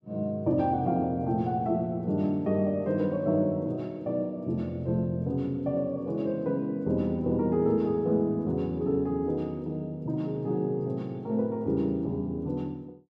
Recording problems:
none

